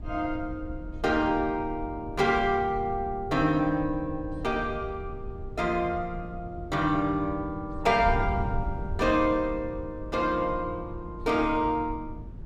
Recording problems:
wind noise; below 110 Hz, SNR 11 dB

